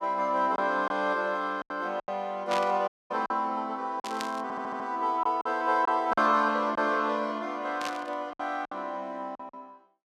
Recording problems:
lost packets; 7% of the sound replaced, filled with silence
static burst; at 2.5 s, at 4 s and at 8 s; peak -2 dB vs average level
dropout; at 3 s
stutter; at 4.5 s

